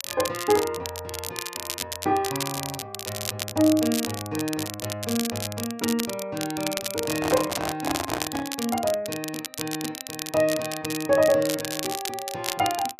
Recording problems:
crackling; vinyl, SNR 5 dB
handling noise; from 7 to 8.5 s; peak +3 dB vs average level

